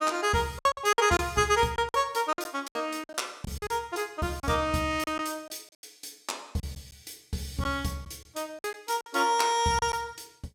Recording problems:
lost packets; 10% of the sound replaced, filled with silence

